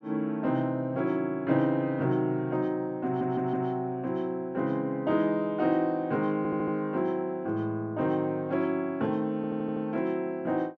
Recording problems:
stutter; at 3 s, at 6.5 s and at 9.5 s

